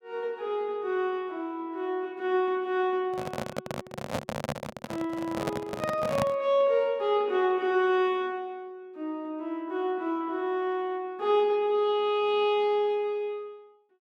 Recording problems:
microphone handling noise; from 3 to 6.5 s; peak +2 dB vs average level

